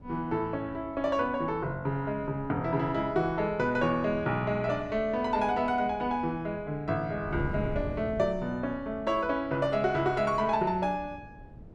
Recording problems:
wind on the microphone; below 230 Hz, SNR 15 dB

